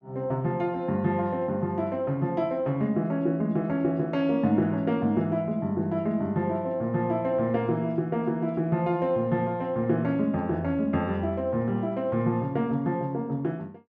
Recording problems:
none

